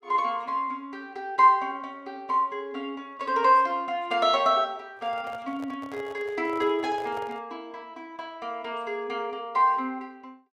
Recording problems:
handling noise; from 5 to 7.5 s; peak -11 dB vs average level

